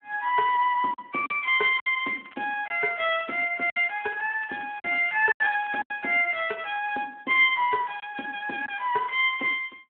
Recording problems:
telephone audio; 240 Hz to 3.3 kHz, Speex
lost packets; 5% of the sound replaced, filled with silence
crackling; from 1.5 to 2.5 s and from 4 to 6 s; loose cable, SNR 27 dB

